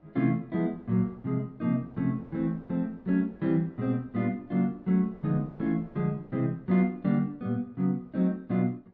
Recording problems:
wind on the microphone; below 540 Hz, SNR 26 dB

